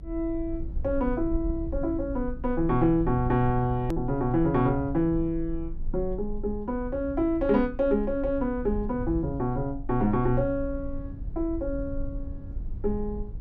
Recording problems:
rumble; below 60 Hz, strongest tone 22 Hz, SNR 10 dB
edit click; at 4 s

